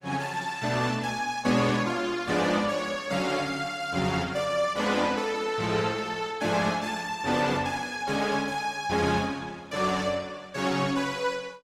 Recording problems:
codec artefacts; Opus, log-spectral distance 4 dB

